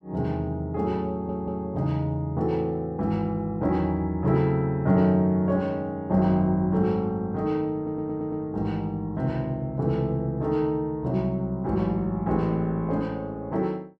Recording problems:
stutter; at 1 s and at 8 s

